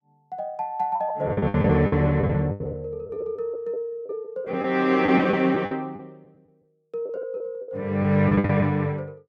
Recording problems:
lost packets; 13% of the sound replaced, filled with the last packet

